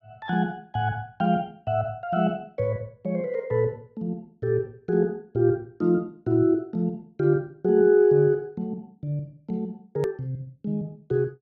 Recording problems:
hard cut with a click; at 10 s

